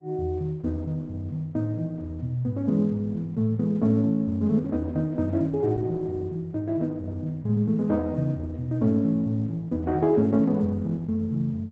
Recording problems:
lossy codec; Opus, log-spectral distance 2 dB, nothing above 7.6 kHz

